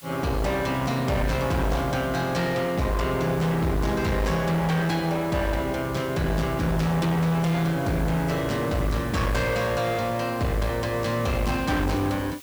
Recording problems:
distorted audio; hard clipping, uneven, signal-to-distortion ratio 6 dB
background hiss; slope +1 dB per octave, SNR 19 dB

